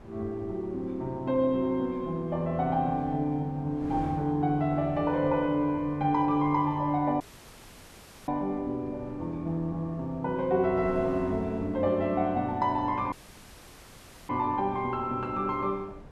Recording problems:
wind on the microphone; below 550 Hz, SNR 18 dB
dropout; at 7 s for 1 s and at 13 s for 1 s

